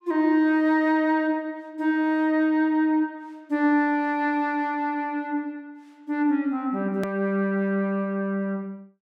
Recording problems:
click at an edit; at 7 s

